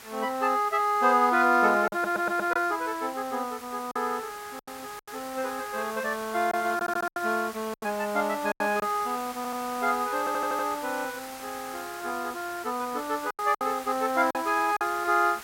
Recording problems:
background hiss; SNR 15 dB
lost packets; 5% of the sound replaced, filled with silence
audio stuttering; 4 times, first at 2 s

